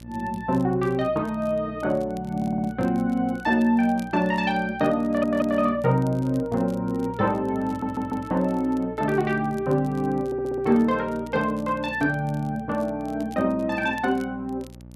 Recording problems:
hum; 60 Hz, harmonics up to 900 Hz, SNR 19 dB
crackle; vinyl, SNR 29 dB
stutter; 4 times, first at 2.5 s

